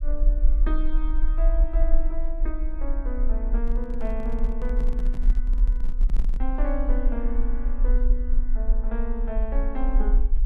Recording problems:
low-frequency rumble; below 38 Hz, SNR -8 dB
handling noise; from 3.5 to 6.5 s; peak 0 dB vs average level

